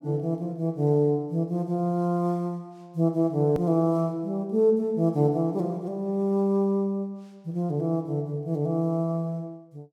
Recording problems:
edit click; at 3.5 s

